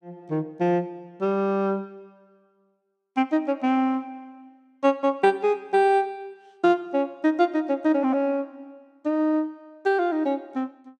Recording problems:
none

